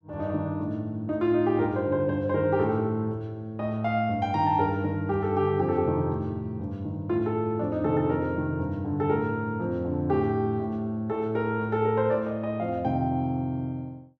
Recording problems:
none

